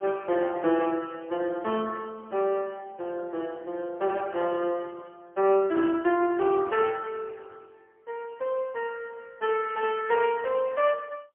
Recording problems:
telephone audio; 240 Hz to 3.3 kHz, AMR-NB, then MP3

